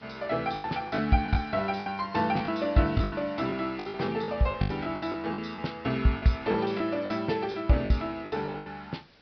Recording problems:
low-pass filter; nothing above 5.5 kHz
hiss; slope -2 dB per octave, SNR 27 dB
packet loss; 13% of the sound replaced, filled with the last packet

